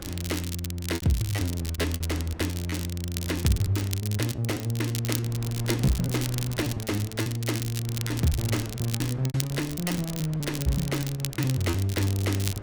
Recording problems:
wind on the microphone; below 490 Hz, SNR 16 dB
crackle; vinyl, SNR 8 dB
lost packets; 15% of the sound replaced, filled with repeated pitch periods

